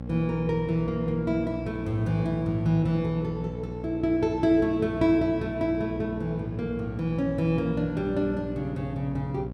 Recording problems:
electrical hum; 60 Hz, harmonics up to 1.1 kHz, SNR 10 dB

